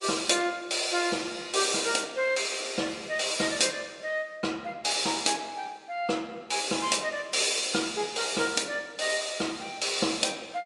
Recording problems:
lossy codec; MP3, log-spectral distance 5 dB, nothing above 11 kHz

